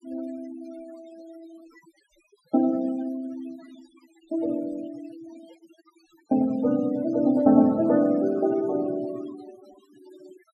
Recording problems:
noise reduction artefacts; signal-to-artefact ratio 23 dB

